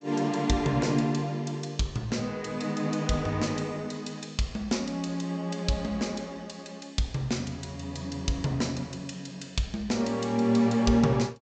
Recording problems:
treble missing; nothing above 8 kHz

